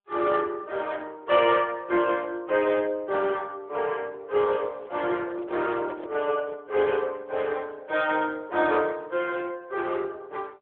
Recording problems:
phone line; 300 Hz to 3.4 kHz, AMR-NB
microphone handling noise; from 4.5 to 6.5 s; peak -8 dB vs average level

